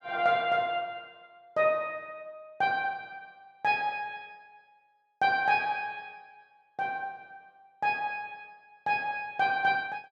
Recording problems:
none

